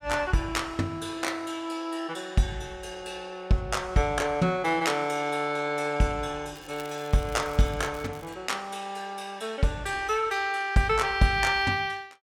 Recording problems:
crackle; from 6.5 to 8.5 s; loose cable, SNR 22 dB

